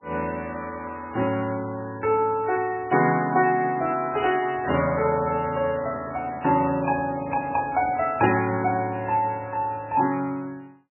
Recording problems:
codec artefacts; MP3, log-spectral distance 4 dB, nothing above 2.5 kHz
handling noise; from 4.5 to 8 s; peak -10 dB vs average level

